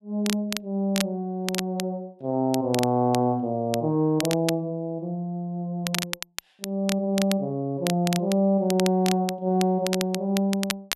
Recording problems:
crackle; vinyl, SNR 8 dB

